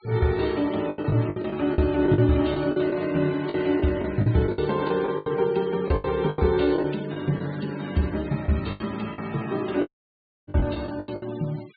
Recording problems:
treble missing; nothing above 4.5 kHz
denoising artefacts; signal-to-artefact ratio 19 dB
lost packets; 13% of the sound replaced, filled with the last packet
dropout; at 10 s for 0.5 s

